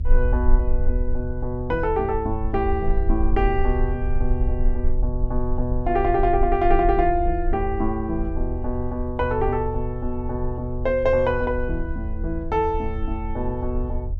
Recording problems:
low-frequency rumble; below 54 Hz, strongest tone 20 Hz, SNR 4 dB

